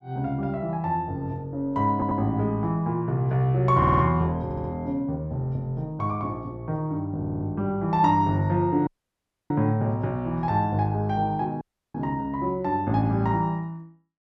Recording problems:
audio stuttering; 4 times, first at 2 s
dropout; at 9 s for 0.5 s and at 12 s

